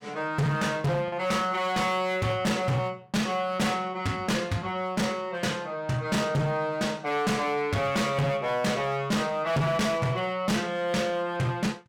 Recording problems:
distorted audio; hard clipping, uneven, signal-to-distortion ratio 7 dB
lost packets; 0.3% of the sound replaced, filled with the last packet

